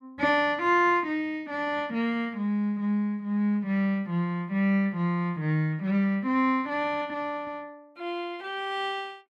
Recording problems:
none

